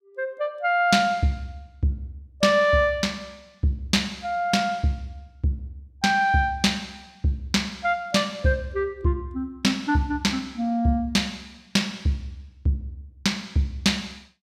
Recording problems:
none

